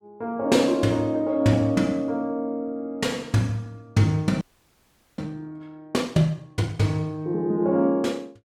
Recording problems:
frozen audio; at 4.5 s for 1 s

